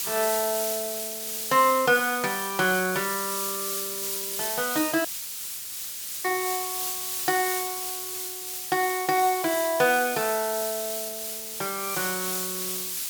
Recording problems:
background hiss; SNR 3 dB
audio cutting out; at 5 s for 1 s

